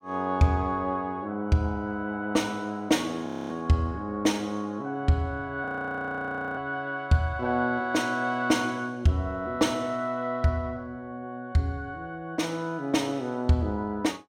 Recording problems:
frozen audio; at 3.5 s and at 5.5 s for 1 s

